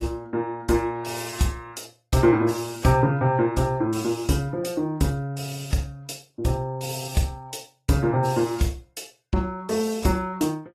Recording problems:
lossy codec; AAC, log-spectral distance 3 dB, nothing above 14.3 kHz

